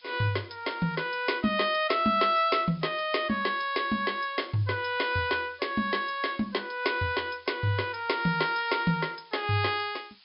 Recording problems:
treble missing; nothing above 5.5 kHz
background hiss; SNR 27 dB

